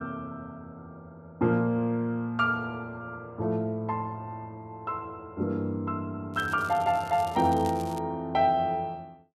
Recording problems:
crackling; from 6.5 to 8 s; loose cable, SNR 20 dB

